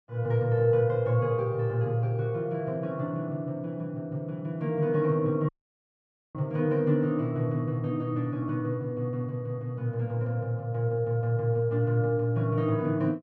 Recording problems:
dropout; at 5.5 s for 1 s

